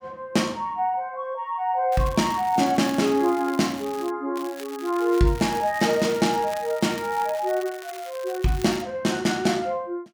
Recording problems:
crackle; from 2 to 4 s and from 4.5 to 9 s; loose cable, SNR 18 dB

